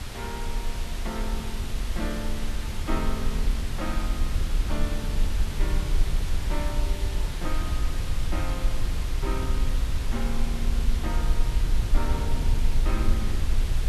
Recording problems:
hiss; slope -2 dB per octave, SNR 2 dB
rumble; below 54 Hz, SNR -7 dB

